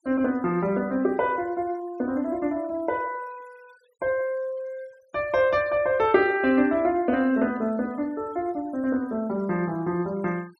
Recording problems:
denoising artefacts; signal-to-artefact ratio 27 dB

